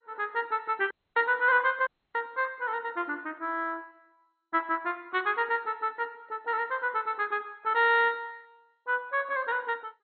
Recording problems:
lossy codec; MP2, log-spectral distance 3 dB, nothing above 3.8 kHz
dropout; at 1 s and at 2 s

